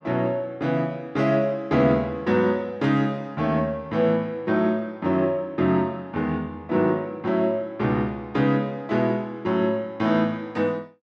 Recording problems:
none

